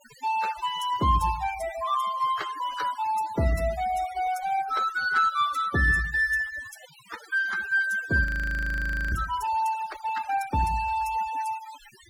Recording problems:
noise reduction artefacts; signal-to-artefact ratio 17 dB
audio freezing; at 8 s for 1 s

